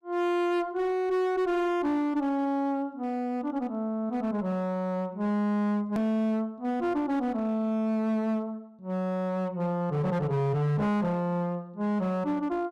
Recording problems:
distortion; hard clipping, signal-to-distortion ratio 10 dB
edit click; at 6 s

